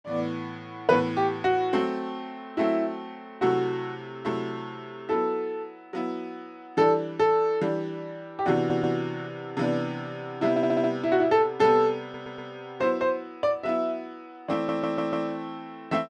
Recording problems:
stutter; 4 times, first at 8.5 s

